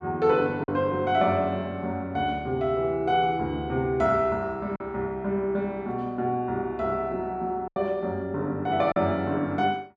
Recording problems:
lost packets; 2% of the sound replaced, filled with silence

